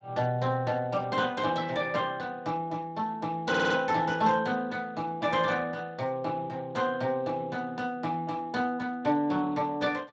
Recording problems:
lossy compression; Speex, log-spectral distance 3 dB
audio stuttering; at 3.5 s

